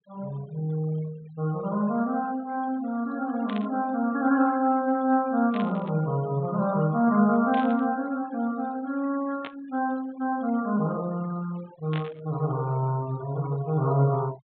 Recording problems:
low-pass filter; nothing above 4 kHz
denoising artefacts; signal-to-artefact ratio 20 dB
static burst; 5 times, first at 3.5 s; peak -6 dB vs average level

